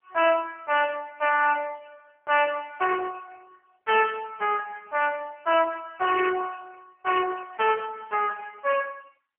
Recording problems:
phone line; 320 Hz to 2.9 kHz, AMR-NB

